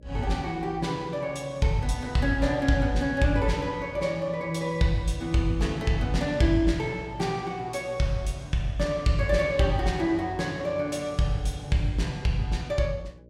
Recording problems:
electrical hum; 60 Hz, harmonics up to 600 Hz, SNR 25 dB

